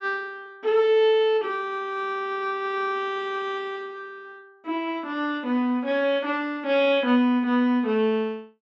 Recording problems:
treble cut off; nothing above 8 kHz

